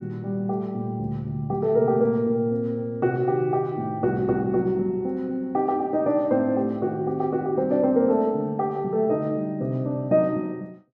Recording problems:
none

